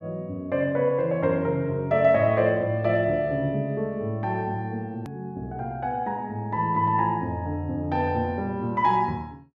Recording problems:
hard cut with a click; at 5 s

